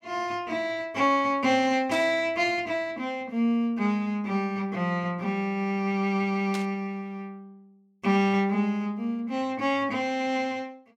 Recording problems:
burst of static; at 2 s and at 6.5 s; peak -6 dB vs average level

